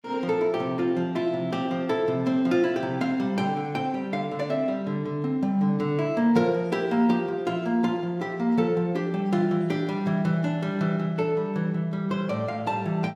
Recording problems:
none

